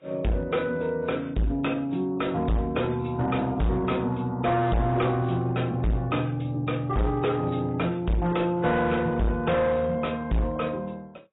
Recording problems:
lossy codec; AAC, log-spectral distance 3 dB, nothing above 3.8 kHz
distorted audio; hard clipping, signal-to-distortion ratio 6 dB

